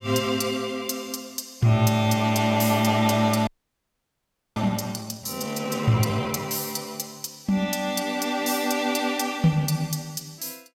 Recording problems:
frozen audio; at 3.5 s for 1 s

